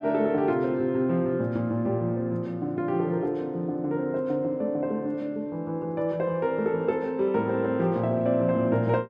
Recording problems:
none

